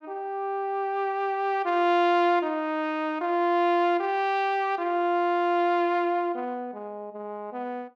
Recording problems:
none

